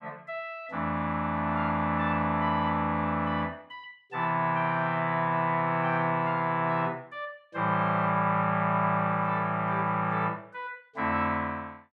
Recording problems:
none

